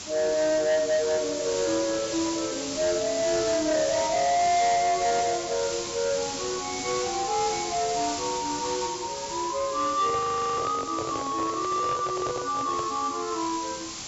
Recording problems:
treble cut off; nothing above 8 kHz
distorted audio; soft clipping, signal-to-distortion ratio 12 dB
background hiss; SNR 7 dB
handling noise; from 10 to 13 s; peak -4 dB vs average level
audio freezing; at 10 s

